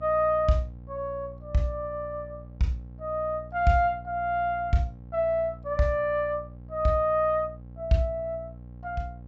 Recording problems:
treble cut off; nothing above 7.7 kHz
electrical hum; 60 Hz, harmonics up to 780 Hz, SNR 17 dB

